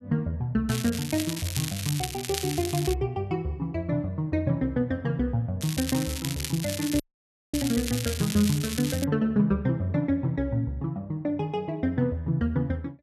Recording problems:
crackling; from 0.5 to 3 s and from 5.5 to 9 s; loose cable, SNR 6 dB
dropout; at 7 s for 0.5 s

